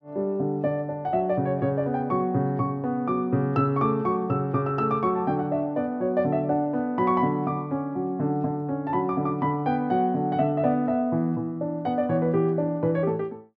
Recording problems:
none

